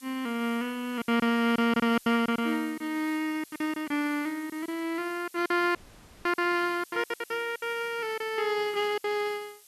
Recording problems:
hiss; slope +3 dB per octave, SNR 22 dB
lost packets; 11% of the sound replaced, filled with silence
dropout; at 6 s for 0.5 s

